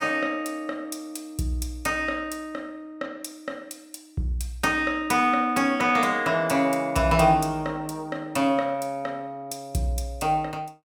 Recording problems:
none

